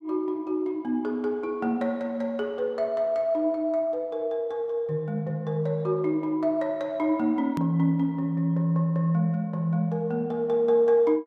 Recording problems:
hard cut with a click; at 7.5 s

